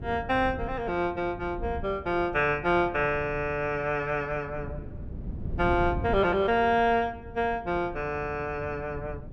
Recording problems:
wind noise; below 170 Hz, SNR 12 dB

